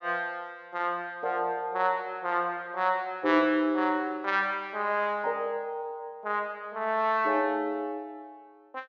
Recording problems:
treble missing; nothing above 7 kHz

